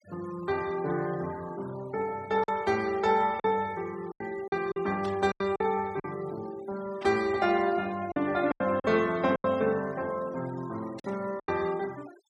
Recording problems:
noise reduction artefacts; signal-to-artefact ratio 20 dB
packet loss; 6% of the sound replaced, filled with silence
burst of static; 4 times, first at 2.5 s; peak -12 dB vs average level

